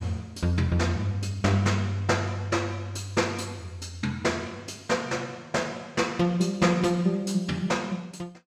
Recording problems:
none

